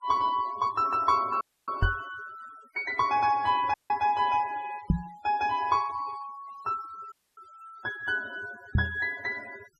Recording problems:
denoising artefacts; signal-to-artefact ratio 20 dB
dropout; at 1.5 s, at 3.5 s and at 7 s
microphone thump; at 2 s, at 5 s and at 9 s; peak +8 dB vs average level

